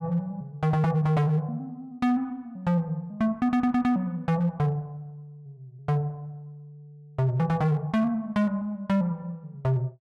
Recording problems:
distorted audio; hard clipping, signal-to-distortion ratio 11 dB

